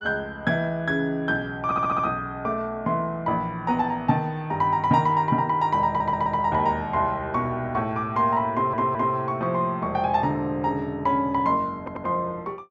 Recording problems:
stutter; 4 times, first at 1.5 s

